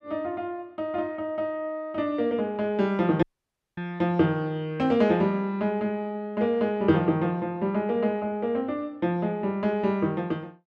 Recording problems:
audio cutting out; at 3 s for 0.5 s

